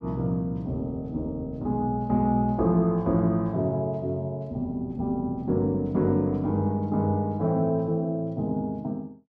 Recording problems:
none

